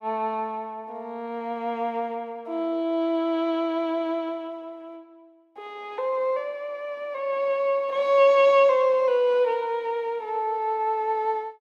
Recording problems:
none

